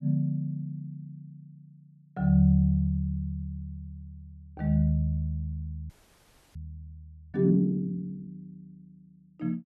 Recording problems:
frozen audio; at 6 s for 0.5 s

